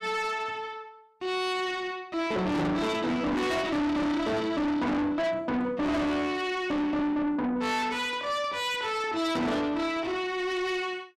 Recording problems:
distorted audio; soft clipping, signal-to-distortion ratio 6 dB

